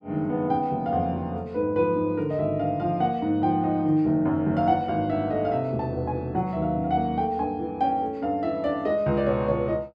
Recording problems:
none

